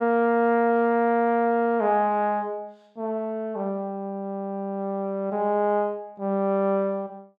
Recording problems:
none

